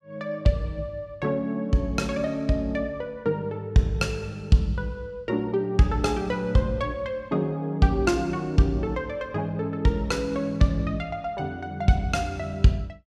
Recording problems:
none

